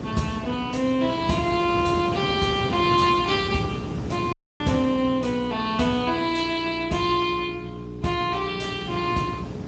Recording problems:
codec artefacts; Speex, log-spectral distance 4 dB, nothing above 8 kHz
electrical hum; 60 Hz, harmonics up to 420 Hz, SNR 12 dB
wind noise; below 410 Hz, SNR 8 dB
audio cutting out; at 4.5 s

